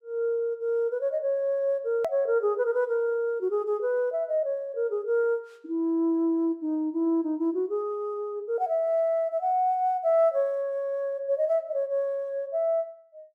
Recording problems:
hard cut with a click; at 2 s

